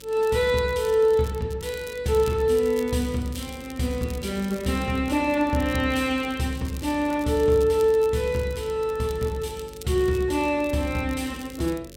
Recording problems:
hum; 50 Hz, harmonics up to 550 Hz, SNR 22 dB
crackling; vinyl, SNR 21 dB

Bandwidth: 16 kHz